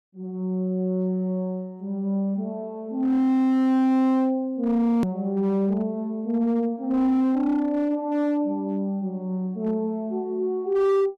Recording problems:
distortion; hard clipping, signal-to-distortion ratio 11 dB
edit click; at 5 s

